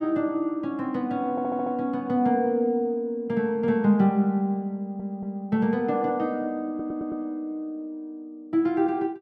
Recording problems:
audio stuttering; at 1.5 s, at 5 s and at 6.5 s

